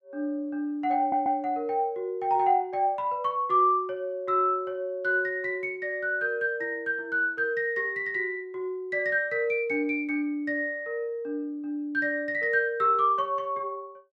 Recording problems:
audio stuttering; at 1 s

